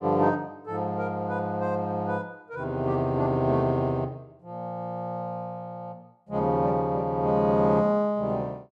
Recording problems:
none

